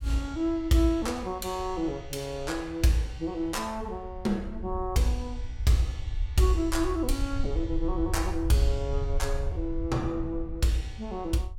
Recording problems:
low-frequency rumble; below 70 Hz, SNR 7 dB

